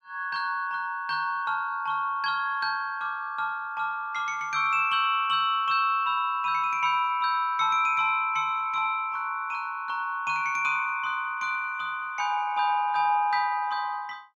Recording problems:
none

